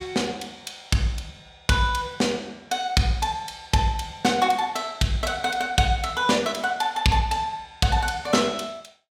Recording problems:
none

